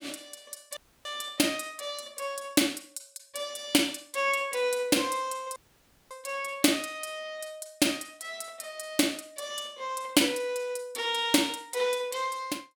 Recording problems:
dropout; at 1 s and at 5.5 s for 0.5 s

